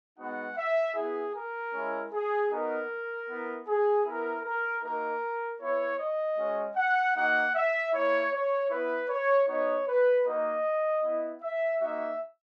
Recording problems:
none

